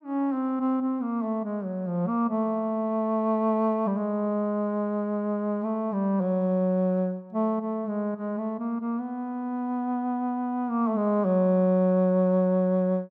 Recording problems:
none

